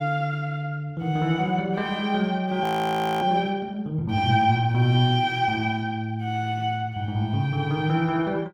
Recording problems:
frozen audio; at 2.5 s for 0.5 s

